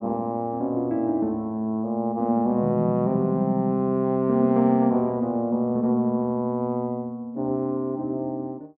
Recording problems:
none

